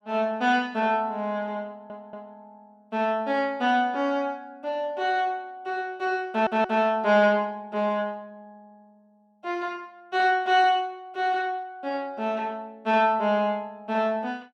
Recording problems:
stutter; at 1.5 s and at 6.5 s

